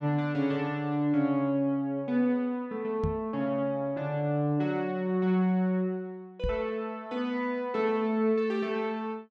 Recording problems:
knock on the microphone; at 3 s and at 6.5 s; peak +1 dB vs average level

